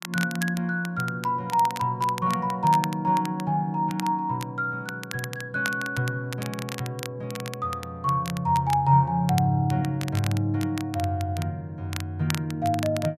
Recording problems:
crackling; vinyl, SNR 13 dB

